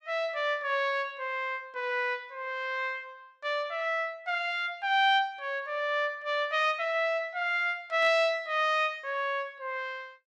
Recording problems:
static burst; at 8 s; peak -13 dB vs average level

